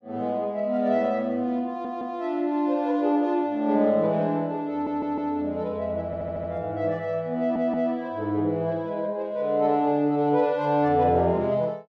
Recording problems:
audio stuttering; 4 times, first at 1.5 s

